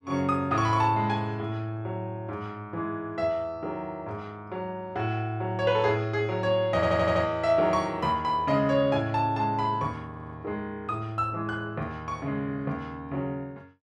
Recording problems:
audio stuttering; at 7 s and at 10 s

